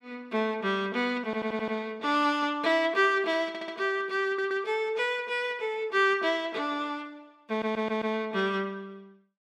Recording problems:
stutter; 4 times, first at 1.5 s

